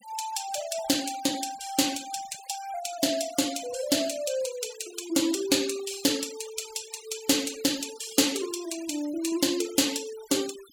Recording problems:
noise reduction artefacts; signal-to-artefact ratio 14 dB

